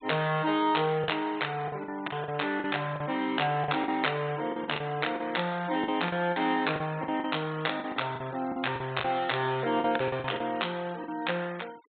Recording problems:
treble cut off; nothing above 4 kHz
noise reduction artefacts; signal-to-artefact ratio 21 dB
packet loss; 11% of the sound replaced, filled with the last packet

